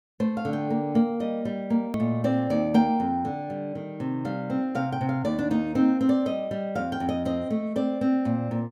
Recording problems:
click at an edit; at 2 s

